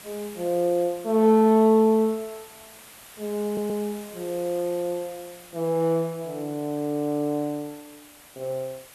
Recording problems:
background hiss; slope -1 dB per octave, SNR 21 dB
stutter; at 3.5 s

